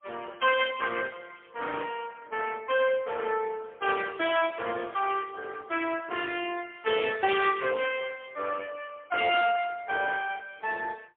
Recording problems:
phone line; 240 Hz to 3.5 kHz, AMR-NB, then MP3

